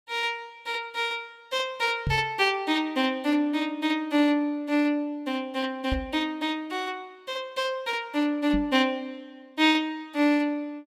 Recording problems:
microphone thump; at 2 s, at 6 s and at 8.5 s; peak +1 dB vs average level

